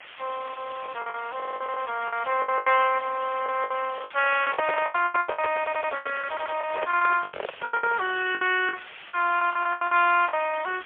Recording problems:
telephone audio; 340 Hz to 3.3 kHz, AMR-NB, then MP3
background hiss; SNR 16 dB
packet loss; 17% of the sound replaced, filled with the last packet
audio stuttering; at 1.5 s, at 5.5 s and at 6.5 s
microphone handling noise; from 4 to 8 s; peak 0 dB vs average level

